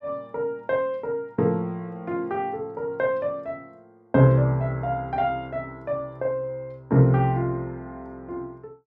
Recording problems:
none

